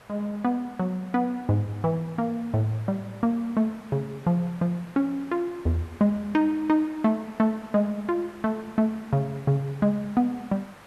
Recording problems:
hiss; SNR 22 dB

